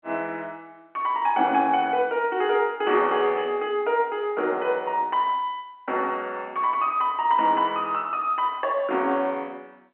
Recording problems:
phone line; 240 Hz to 3.3 kHz, G.711

